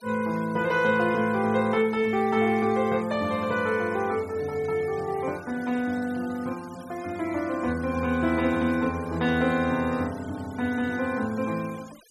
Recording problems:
noise reduction artefacts; signal-to-artefact ratio 21 dB

